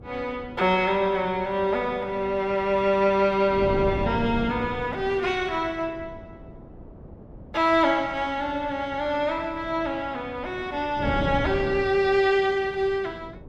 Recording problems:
wind noise; below 340 Hz, SNR 13 dB

